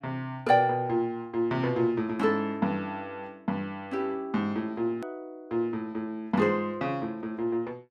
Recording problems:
click at an edit; at 5 s

